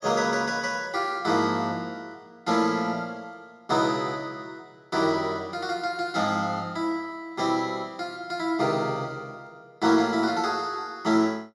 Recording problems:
none

